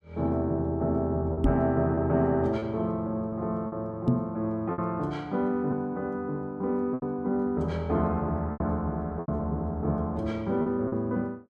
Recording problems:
packet loss; 5% of the sound replaced, filled with repeated pitch periods
microphone thump; at 1.5 s and at 4 s; peak +8 dB vs average level

